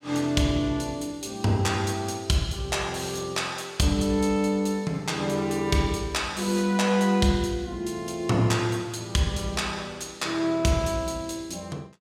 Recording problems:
none

